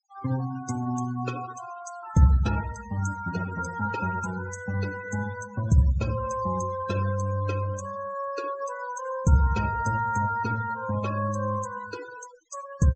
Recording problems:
treble missing; nothing above 8 kHz
denoising artefacts; signal-to-artefact ratio 14 dB

